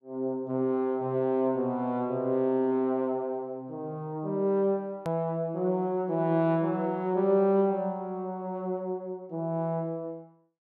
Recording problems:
hard cut with a click; at 5 s

